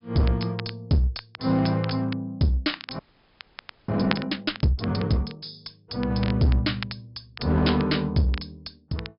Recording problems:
treble missing; nothing above 5.5 kHz
distorted audio; hard clipping, uneven, signal-to-distortion ratio 9 dB
crackle; vinyl, SNR 15 dB
audio freezing; at 3 s for 1 s

